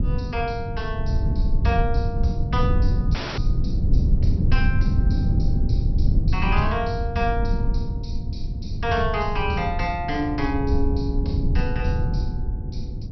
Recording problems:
treble cut off; nothing above 5.8 kHz
rumble; below 110 Hz, SNR -2 dB
dropout; at 3 s

